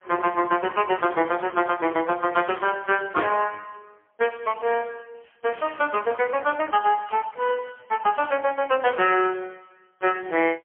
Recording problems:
phone line; 260 Hz to 2.9 kHz, AMR-NB, then MP3
burst of static; at 2.5 s, at 5.5 s and at 7 s; peak -16 dB vs average level

